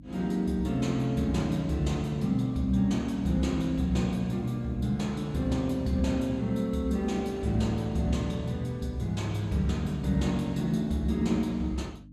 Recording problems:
hum; 50 Hz, harmonics up to 300 Hz, SNR 20 dB

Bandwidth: 15 kHz